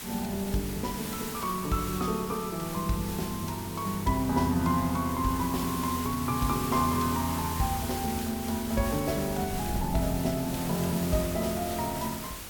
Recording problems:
background hiss; slope -1 dB per octave, SNR 8 dB
wind noise; below 190 Hz, SNR 17 dB

